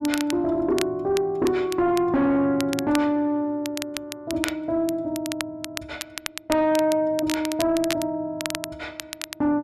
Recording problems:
distortion; soft clipping, signal-to-distortion ratio 10 dB
crackle; vinyl, SNR 11 dB

